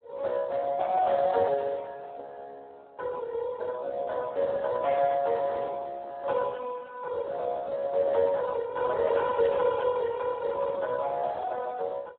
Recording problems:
phone line; 320 Hz to 2.1 kHz, Speex

